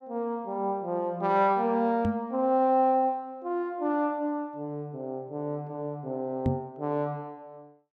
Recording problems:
microphone bump; at 2 s and at 6.5 s; peak +5 dB vs average level

